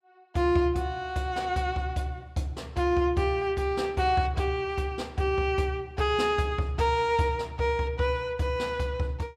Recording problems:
none

